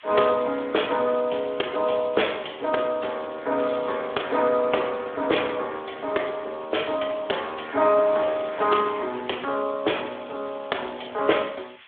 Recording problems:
phone line; 280 Hz to 3.5 kHz, Speex
hiss; SNR 22 dB

